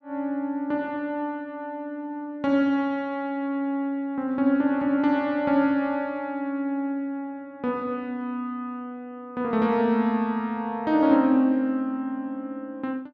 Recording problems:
none

